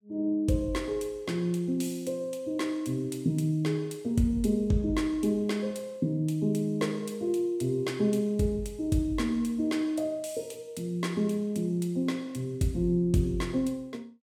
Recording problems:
none

